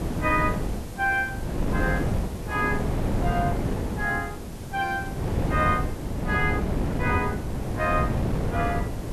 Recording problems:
hiss; slope 0 dB per octave, SNR 19 dB
wind on the microphone; below 330 Hz, SNR 1 dB

